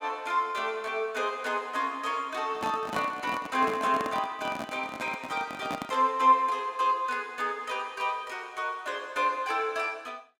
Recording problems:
microphone handling noise; from 2.5 to 6 s; peak -2 dB vs average level

